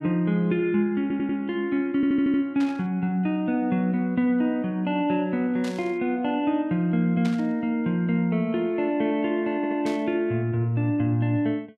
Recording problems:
stutter; at 1 s, at 2 s and at 9.5 s
burst of static; 4 times, first at 2.5 s; peak -9 dB vs average level

